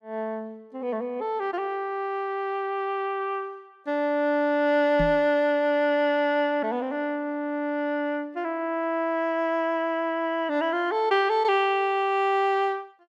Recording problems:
microphone bump; at 5 s; peak -1 dB vs average level

